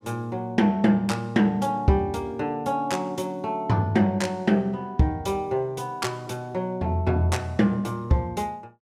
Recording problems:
none

